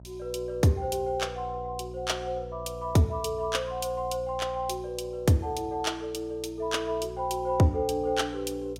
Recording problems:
mains hum; 60 Hz, harmonics up to 660 Hz, SNR 16 dB

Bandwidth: 16.5 kHz